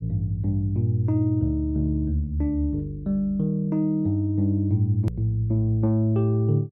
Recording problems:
hard cut with a click; at 5 s

